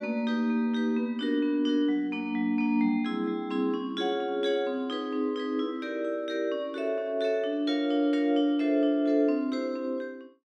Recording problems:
none

